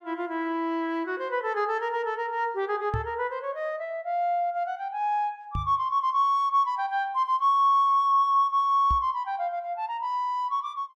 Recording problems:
microphone bump; at 3 s, at 5.5 s and at 9 s; peak -1 dB vs average level

